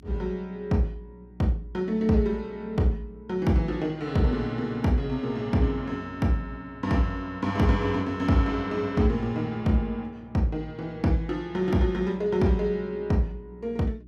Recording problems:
hum; 60 Hz, harmonics up to 360 Hz, SNR 24 dB

